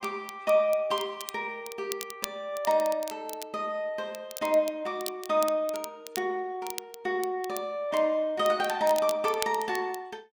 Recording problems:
crackling; vinyl, SNR 13 dB

